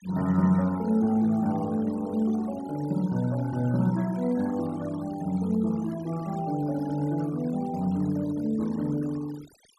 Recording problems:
denoising artefacts; signal-to-artefact ratio 21 dB

